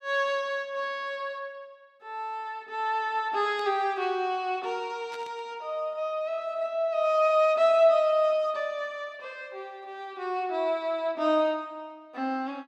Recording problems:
static burst; at 3.5 s and at 5 s; peak -14 dB vs average level

